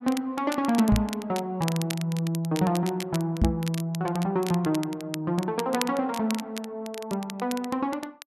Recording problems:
crackling; vinyl, SNR 12 dB
knock on the microphone; at 1 s and at 3.5 s; peak +8 dB vs average level

